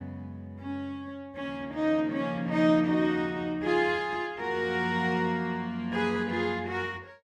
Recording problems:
none

